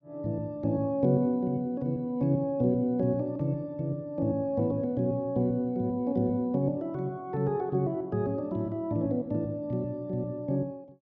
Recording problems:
none

